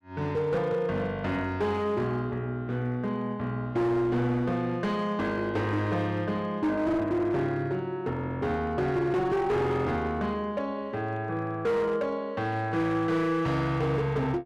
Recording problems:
distortion; hard clipping, signal-to-distortion ratio 12 dB

